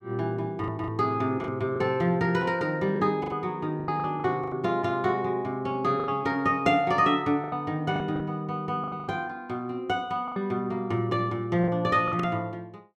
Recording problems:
lost packets; 9% of the sound replaced, filled with the last packet

